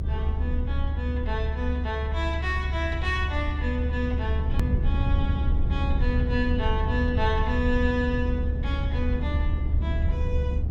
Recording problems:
low-frequency rumble; below 80 Hz, SNR -4 dB
edit click; at 4.5 s

